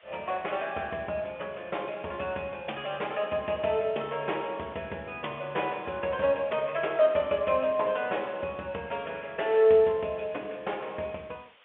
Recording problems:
telephone audio; 260 Hz to 3.4 kHz, G.711
background hiss; SNR 28 dB

